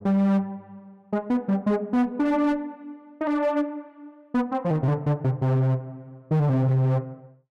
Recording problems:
distorted audio; hard clipping, signal-to-distortion ratio 11 dB

